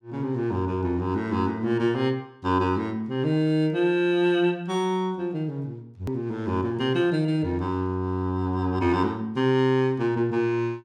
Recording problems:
hard cut with a click; at 6 s

